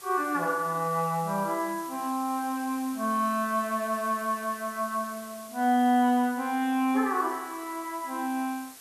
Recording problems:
hiss; slope 0 dB per octave, SNR 17 dB

